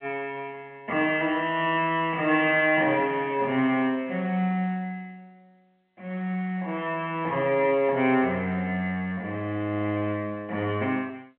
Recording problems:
phone line; 220 Hz to 3.4 kHz, G.711

